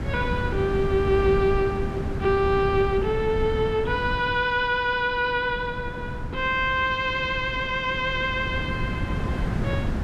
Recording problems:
wind noise; below 230 Hz, SNR 6 dB

